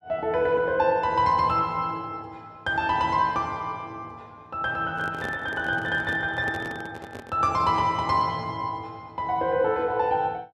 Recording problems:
handling noise; from 5 to 7.5 s; peak -6 dB vs average level

